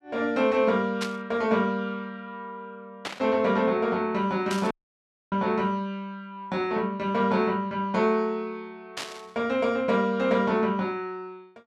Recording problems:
burst of static; 4 times, first at 1 s; peak -1 dB vs average level
dropout; at 4.5 s for 0.5 s

